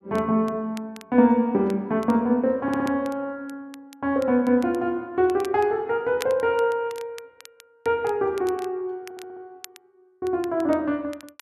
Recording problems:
crackling; vinyl, SNR 23 dB
audio stuttering; at 2.5 s and at 9 s

